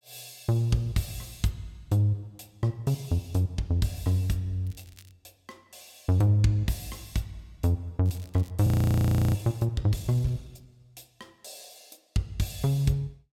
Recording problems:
crackling; at 4.5 s and at 8 s; loose cable, SNR 27 dB
frozen audio; at 8.5 s for 0.5 s

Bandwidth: 16.5 kHz